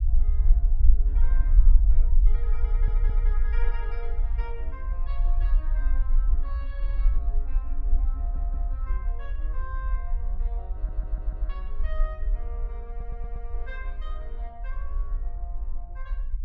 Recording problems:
low-frequency rumble; below 42 Hz, strongest tone 22 Hz, SNR -17 dB
stutter; 4 times, first at 2.5 s

